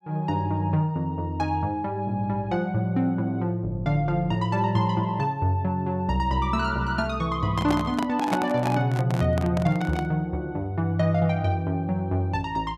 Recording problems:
handling noise; from 7.5 to 10 s; peak +2 dB vs average level

